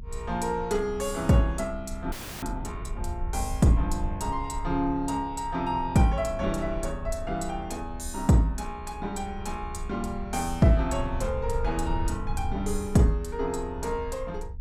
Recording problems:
low-frequency rumble; below 70 Hz, SNR 10 dB
frozen audio; at 2 s

